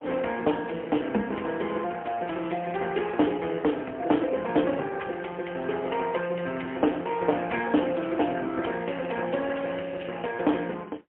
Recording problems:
phone line; 220 Hz to 3.2 kHz, AMR-NB, then MP3

